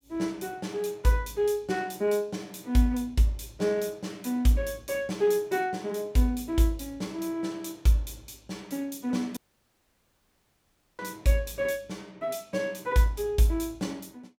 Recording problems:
audio cutting out; at 9.5 s for 1.5 s

